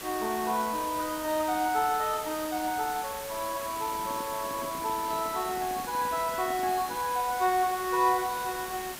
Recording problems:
background hiss; slope -2 dB per octave, SNR 9 dB
handling noise; from 3.5 to 7 s; peak -10 dB vs average level

